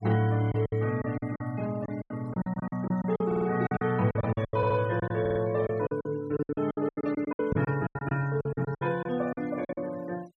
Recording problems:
noise reduction artefacts; signal-to-artefact ratio 21 dB
lost packets; 18% of the sound replaced, filled with silence
stutter; at 3.5 s, at 4.5 s and at 5 s
microphone bump; at 7.5 s; peak +3 dB vs average level

